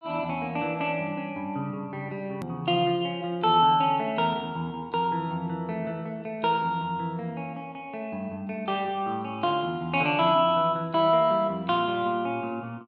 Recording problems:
click at an edit; at 2.5 s

